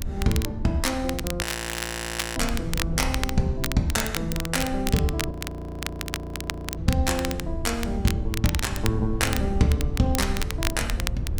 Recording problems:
mains hum; 50 Hz, harmonics up to 350 Hz, SNR 22 dB
low-frequency rumble; below 82 Hz, SNR 7 dB
crackle; vinyl, SNR 7 dB
audio freezing; at 1.5 s for 1 s and at 5.5 s for 1.5 s

